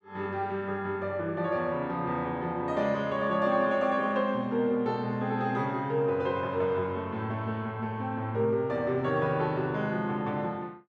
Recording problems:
none

